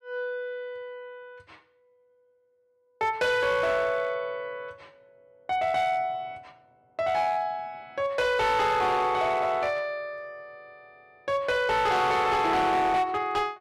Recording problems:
distorted audio; hard clipping, signal-to-distortion ratio 11 dB

